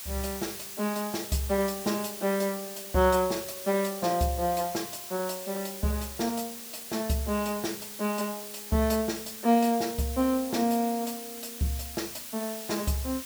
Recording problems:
background hiss; slope +1 dB per octave, SNR 9 dB

